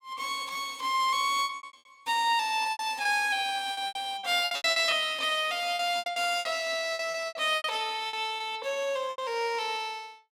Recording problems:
packet loss; 14% of the sound replaced, filled with repeated pitch periods

